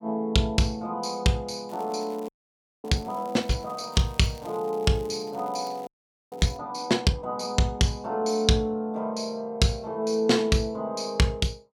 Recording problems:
crackling; from 1.5 to 6.5 s; loose cable, SNR 27 dB
frozen audio; at 2.5 s for 0.5 s and at 6 s

